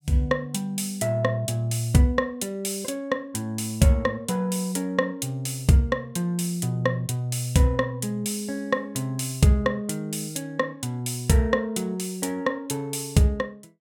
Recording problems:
none

